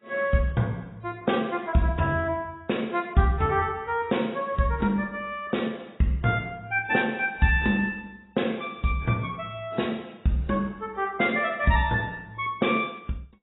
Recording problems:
codec artefacts; AAC, log-spectral distance 3 dB, nothing above 3.8 kHz

